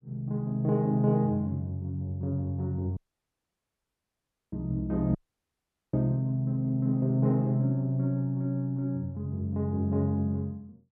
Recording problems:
dropout; at 3 s for 1.5 s and at 5 s for 1 s

